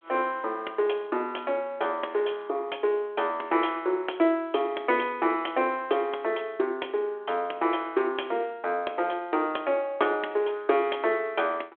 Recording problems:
telephone audio; 280 Hz to 3.8 kHz, G.726

